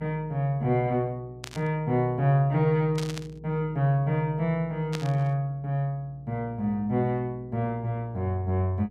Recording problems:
mains hum; 60 Hz, harmonics up to 480 Hz, SNR 24 dB
burst of static; at 1.5 s, at 3 s and at 5 s; peak -4 dB vs average level

